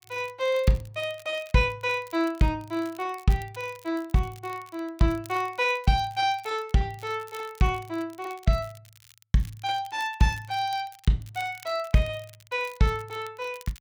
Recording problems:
crackling; vinyl, SNR 24 dB

